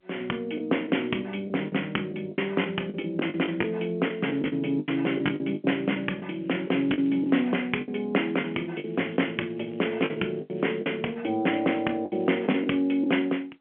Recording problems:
telephone audio; 220 Hz to 3.3 kHz, G.711
packet loss; 9% of the sound replaced, filled with the last packet
crackle; from 6 to 7.5 s, from 8 to 11 s and at 12 s; loose cable, SNR 29 dB

